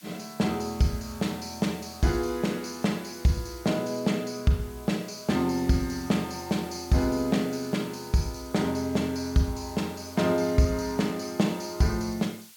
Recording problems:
background hiss; slope +4 dB per octave, SNR 20 dB

